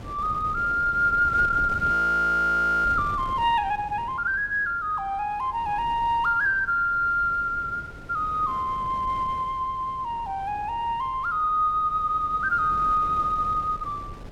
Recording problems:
wind noise; below 500 Hz, SNR 17 dB
frozen audio; at 2 s for 1 s

